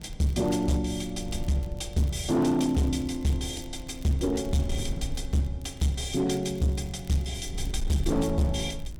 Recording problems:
distortion; hard clipping, uneven, signal-to-distortion ratio 10 dB
wind on the microphone; below 82 Hz, SNR 12 dB
crackling; vinyl, SNR 27 dB

